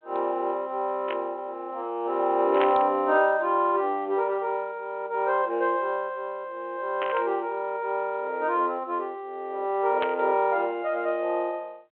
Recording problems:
phone line; 300 Hz to 3.5 kHz, G.726
static burst; 4 times, first at 1 s; peak -2 dB vs average level

